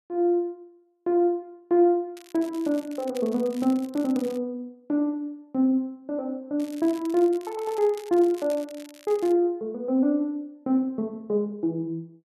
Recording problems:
crackle; from 2 to 4.5 s and from 6.5 to 9.5 s; loose cable, SNR 22 dB

